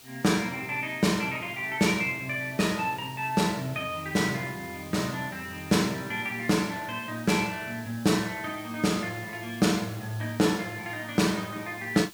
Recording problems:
background hiss; slope 0 dB per octave, SNR 19 dB

